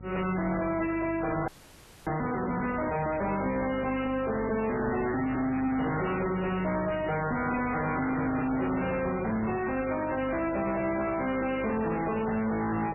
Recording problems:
lossy codec; MP3, log-spectral distance 5 dB, nothing above 2.7 kHz
distorted audio; soft clipping, signal-to-distortion ratio 6 dB
hum; 50 Hz, harmonics up to 750 Hz, SNR 16 dB
audio freezing; at 1.5 s for 0.5 s

